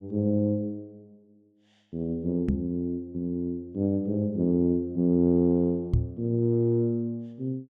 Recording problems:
microphone thump; at 2.5 s and at 6 s; peak +6 dB vs average level

